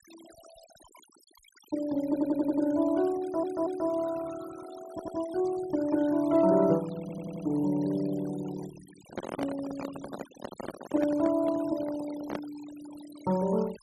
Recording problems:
denoising artefacts; signal-to-artefact ratio 19 dB
stutter; 4 times, first at 2 s
microphone handling noise; from 9 to 12 s; peak -1 dB vs average level

